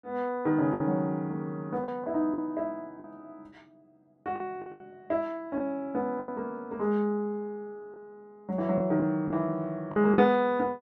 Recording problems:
lost packets; 6% of the sound replaced, filled with the last packet

